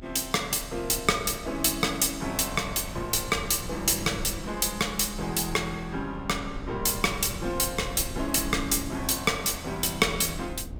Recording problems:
rumble; below 130 Hz, SNR 15 dB

